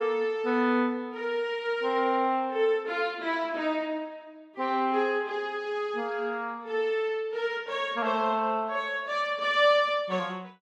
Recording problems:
none

